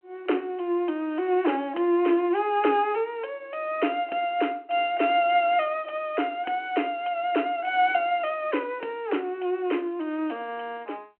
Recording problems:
phone line; 240 Hz to 3.2 kHz, G.726

